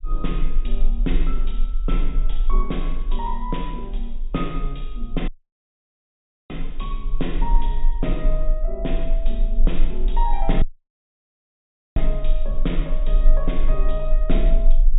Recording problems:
treble cut off; nothing above 4 kHz
low-frequency rumble; below 32 Hz, strongest tone 24 Hz, SNR -5 dB
dropout; at 5.5 s for 1 s and at 11 s for 1.5 s

